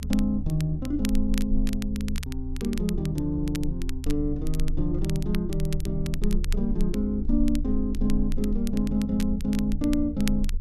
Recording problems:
low-frequency rumble; below 38 Hz, strongest tone 18 Hz, SNR 6 dB
crackling; vinyl, SNR 15 dB

